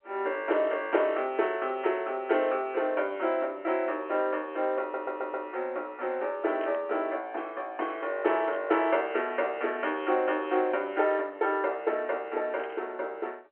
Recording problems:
phone line; 280 Hz to 3.3 kHz, G.711
audio stuttering; at 5 s
static burst; at 6.5 s, at 8.5 s and at 13 s; peak -13 dB vs average level

